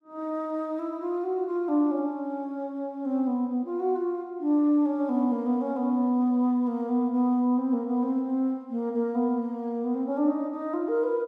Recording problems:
none

